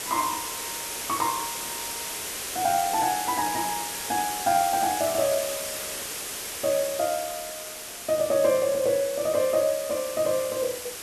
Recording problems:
background hiss; slope -1 dB per octave, SNR 5 dB

